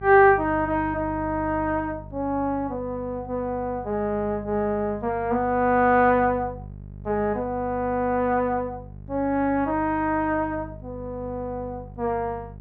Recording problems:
mains hum; 50 Hz, harmonics up to 600 Hz, SNR 16 dB

